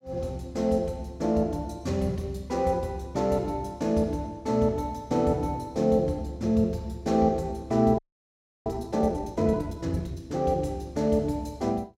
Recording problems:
frozen audio; at 8 s for 0.5 s

